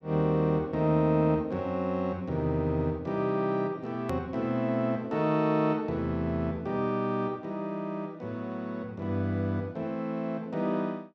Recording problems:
hard cut with a click; at 4 s

